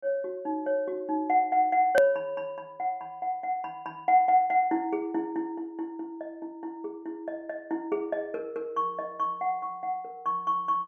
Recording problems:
click at an edit; at 2 s

